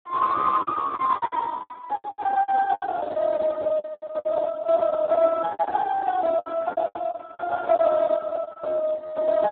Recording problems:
telephone audio; 190 Hz to 2 kHz, Speex
packet loss; 17% of the sound replaced, filled with the last packet
handling noise; from 5 to 8 s; peak -13 dB vs average level

